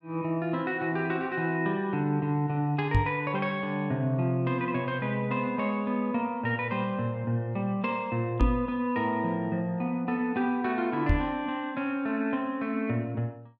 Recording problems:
microphone thump; at 3 s, at 8.5 s and at 11 s; peak +8 dB vs average level

